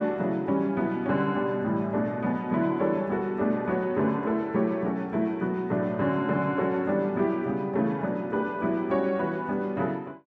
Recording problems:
none

